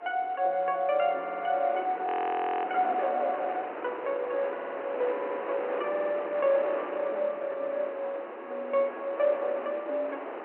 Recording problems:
telephone audio; 300 Hz to 3.3 kHz, G.711
wind noise; below 1.2 kHz, SNR 8 dB
audio stuttering; 4 times, first at 1 s
audio freezing; at 2 s for 0.5 s

